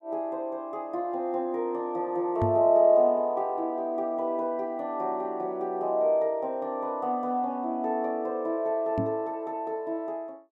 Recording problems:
microphone bump; at 2.5 s and at 9 s; peak +2 dB vs average level

